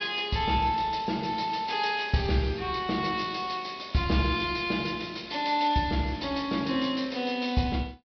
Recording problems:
treble missing; nothing above 5.5 kHz

